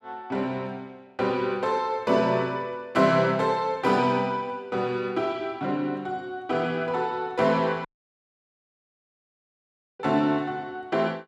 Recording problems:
audio cutting out; at 8 s for 2 s

